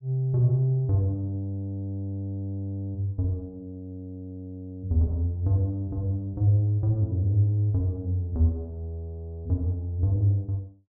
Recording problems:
none

